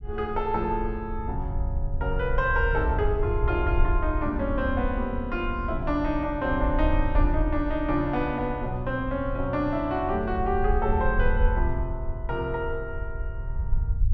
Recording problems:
low-frequency rumble; below 68 Hz, SNR 3 dB

